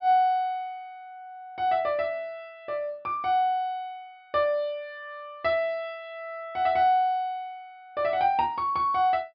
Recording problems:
treble missing; nothing above 5.4 kHz

